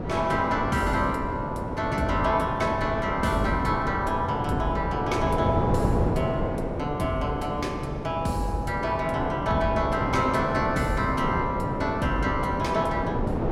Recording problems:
wind noise; below 520 Hz, SNR 3 dB

